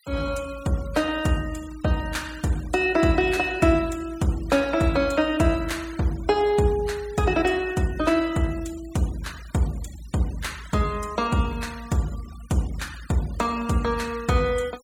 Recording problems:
denoising artefacts; signal-to-artefact ratio 21 dB

